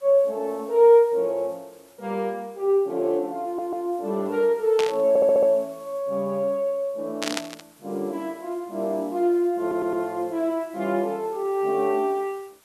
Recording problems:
hiss; slope -1 dB per octave, SNR 29 dB
stutter; at 3.5 s, at 5 s and at 9.5 s
static burst; at 5 s and at 7 s; peak +1 dB vs average level

